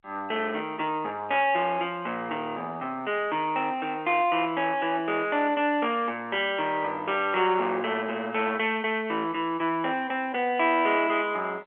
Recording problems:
telephone audio; 340 Hz to 3.3 kHz, G.711
distorted audio; soft clipping, signal-to-distortion ratio 15 dB

